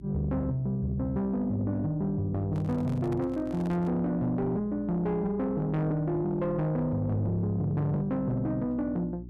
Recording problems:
distorted audio; soft clipping, signal-to-distortion ratio 10 dB
hum; 60 Hz, harmonics up to 360 Hz, SNR 17 dB
microphone handling noise; from 2.5 to 4 s; peak -10 dB vs average level

